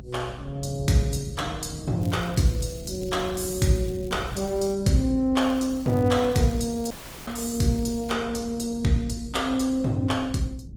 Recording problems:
codec artefacts; Opus, log-spectral distance 3 dB
low-frequency rumble; below 170 Hz, SNR 15 dB
crackling; from 2 to 4.5 s and from 5.5 to 8 s; loose cable, SNR 24 dB
dropout; at 7 s

